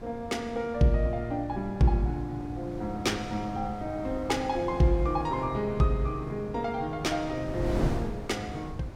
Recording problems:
wind noise; below 330 Hz, SNR 10 dB

